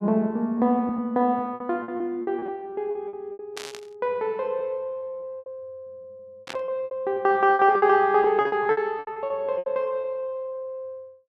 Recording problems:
packet loss; 13% of the sound replaced, filled with repeated pitch periods
static burst; at 3.5 s and at 6.5 s; peak -6 dB vs average level

